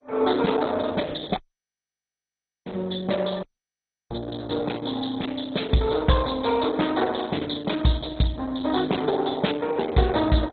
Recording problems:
codec artefacts; Opus, then MP2, log-spectral distance 7 dB, nothing above 4 kHz
audio cutting out; at 1.5 s for 1.5 s and at 3.5 s for 0.5 s

